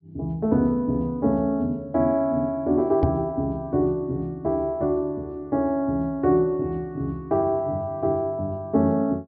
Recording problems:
treble missing; nothing above 5.5 kHz
microphone bump; at 3 s; peak +3 dB vs average level

